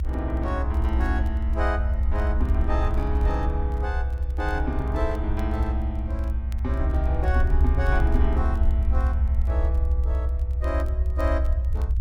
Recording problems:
low-frequency rumble; below 70 Hz, strongest tone 62 Hz, SNR -6 dB
crackling; vinyl, SNR 27 dB

